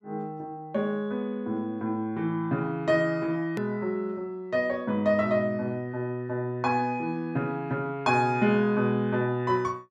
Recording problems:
hard cut with a click; at 3.5 s

